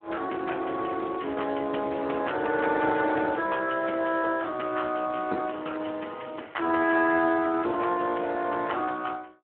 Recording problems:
telephone audio; 240 Hz to 3.1 kHz, Speex

